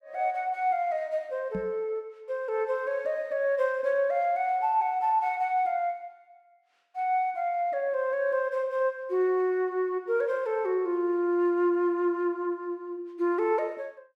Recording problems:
microphone thump; at 1.5 s; peak -4 dB vs average level

